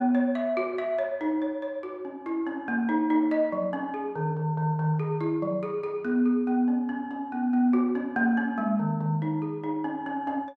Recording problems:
none

